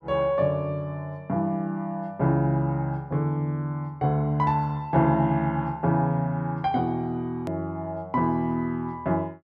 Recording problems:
click at an edit; at 7.5 s

